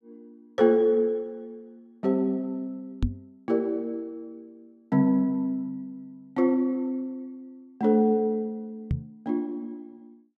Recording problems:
knock on the microphone; at 3 s and at 9 s; peak +4 dB vs average level

